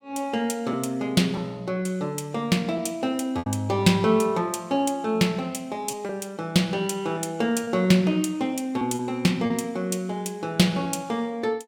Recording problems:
packet loss; 3% of the sound replaced, filled with repeated pitch periods

